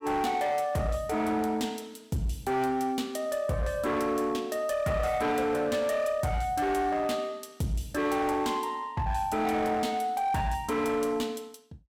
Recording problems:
distorted audio; hard clipping, signal-to-distortion ratio 11 dB

